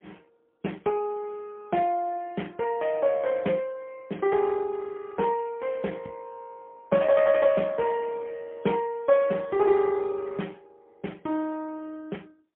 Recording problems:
phone line; 220 Hz to 3.4 kHz, AMR-NB, then MP3

